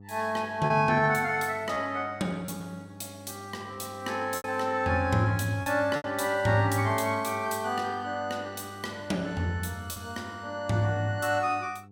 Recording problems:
electrical hum; 50 Hz, harmonics up to 800 Hz, SNR 19 dB
lost packets; 3% of the sound replaced, filled with repeated pitch periods

